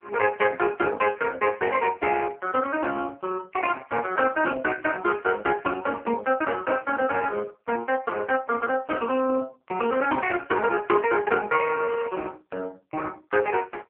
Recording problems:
phone line; 300 Hz to 3.1 kHz, AMR-NB

